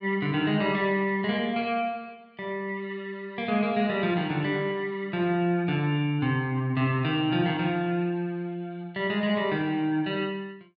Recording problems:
none

